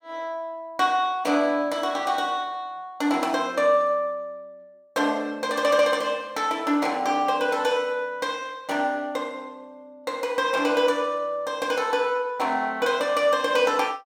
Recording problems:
none

